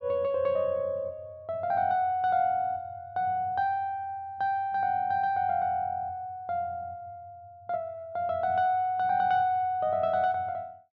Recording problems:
none

